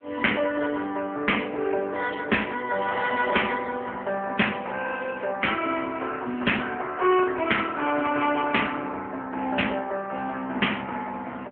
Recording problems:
telephone audio; 260 Hz to 3.3 kHz, AMR-NB

